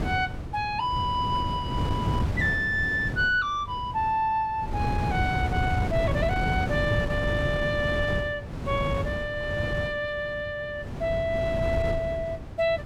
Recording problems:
wind on the microphone; below 250 Hz, SNR 3 dB

